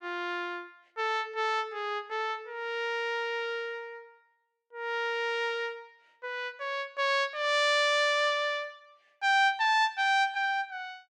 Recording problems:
none

